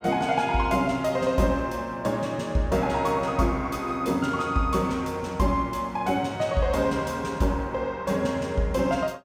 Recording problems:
none

